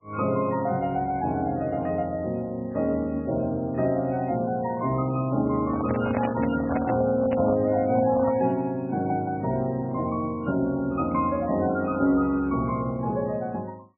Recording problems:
lossy codec; MP3, log-spectral distance 2 dB, nothing above 2.5 kHz
handling noise; from 5.5 to 8.5 s; peak 0 dB vs average level

